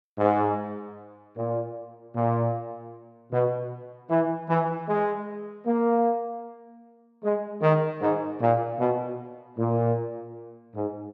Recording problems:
none

